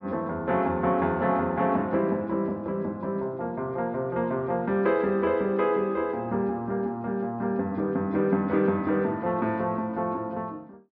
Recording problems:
treble cut off; nothing above 5.5 kHz

